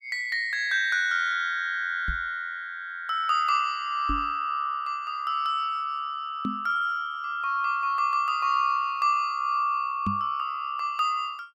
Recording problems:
microphone thump; 4 times, first at 2 s; peak 0 dB vs average level

